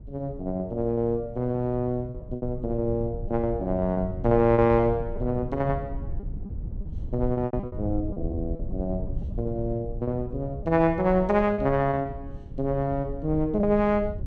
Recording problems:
low-frequency rumble; below 100 Hz, SNR 10 dB
lost packets; 10% of the sound replaced, filled with repeated pitch periods

